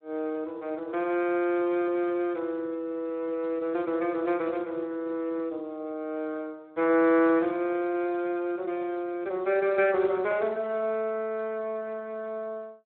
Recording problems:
telephone audio; 240 Hz to 3.1 kHz, Speex

